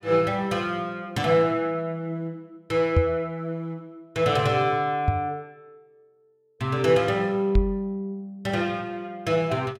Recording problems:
microphone thump; at 3 s, at 5 s and at 7.5 s; peak +7 dB vs average level

